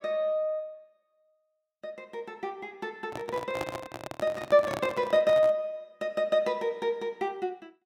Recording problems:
handling noise; from 3 to 5.5 s; peak -2 dB vs average level

